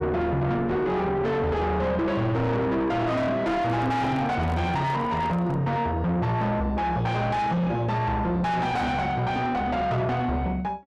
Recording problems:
distortion; soft clipping, signal-to-distortion ratio 6 dB
microphone handling noise; from 3.5 to 5.5 s; peak -3 dB vs average level

